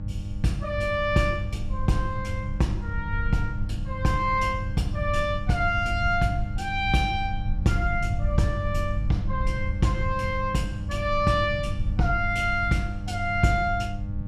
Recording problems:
electrical hum; 50 Hz, harmonics up to 800 Hz, SNR 9 dB
low-frequency rumble; below 92 Hz, SNR 6 dB

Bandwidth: 14 kHz